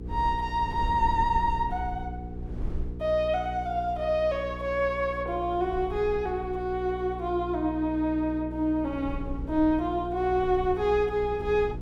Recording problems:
mains hum; 60 Hz, harmonics up to 480 Hz, SNR 12 dB
wind noise; below 78 Hz, SNR 13 dB

